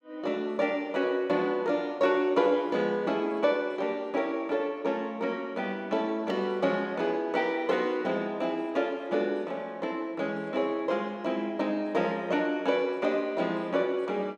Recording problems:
none

